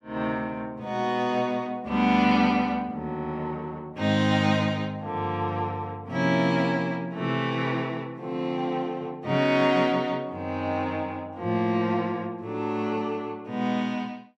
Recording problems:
none

